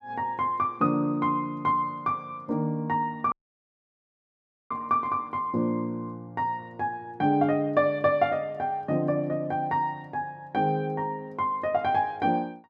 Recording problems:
dropout; at 3.5 s for 1.5 s

